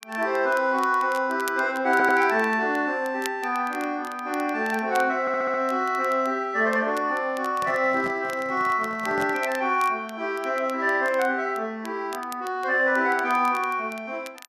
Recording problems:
crackle; vinyl, SNR 21 dB
stutter; at 2 s and at 5 s
microphone handling noise; from 7.5 to 9.5 s; peak -9 dB vs average level

